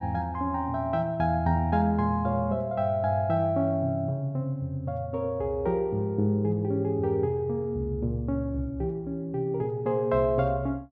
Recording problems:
none

